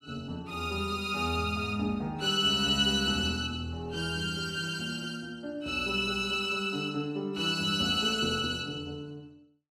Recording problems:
none

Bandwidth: 14.5 kHz